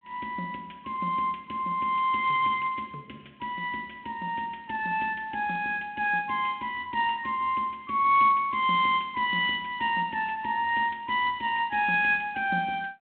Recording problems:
telephone audio; 220 Hz to 3.5 kHz, G.726

